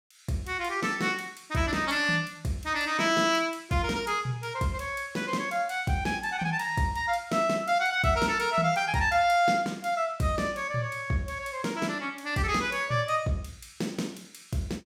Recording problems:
none

